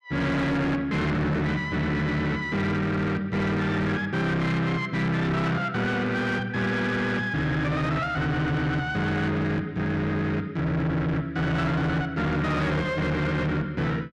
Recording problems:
distortion; soft clipping, signal-to-distortion ratio 8 dB

